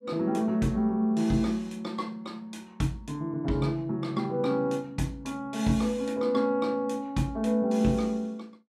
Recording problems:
none

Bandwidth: 14 kHz